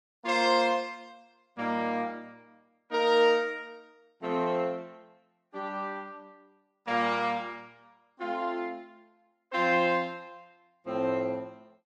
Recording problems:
lossy compression; Vorbis, log-spectral distance 2 dB, nothing above 10.1 kHz

